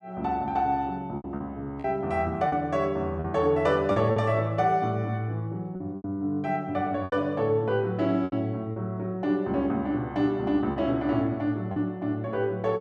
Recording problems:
lost packets; 6% of the sound replaced, filled with repeated pitch periods

